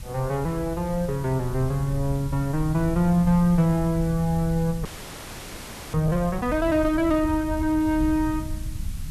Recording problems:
hiss; slope +1 dB per octave, SNR 22 dB
rumble; below 100 Hz, SNR 11 dB
audio freezing; at 5 s for 1 s

